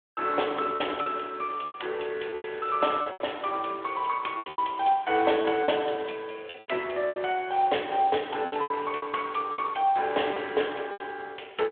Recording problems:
phone line; 320 Hz to 3.5 kHz, Speex
lost packets; 10% of the sound replaced, filled with repeated pitch periods

